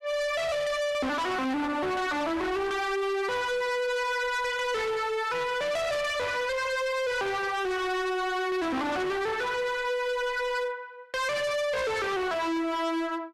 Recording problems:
distorted audio; hard clipping, signal-to-distortion ratio 7 dB

